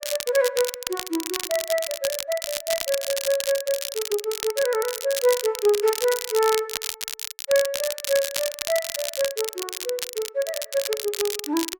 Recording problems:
crackle; vinyl, SNR 4 dB

